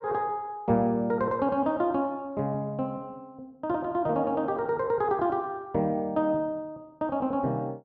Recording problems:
none

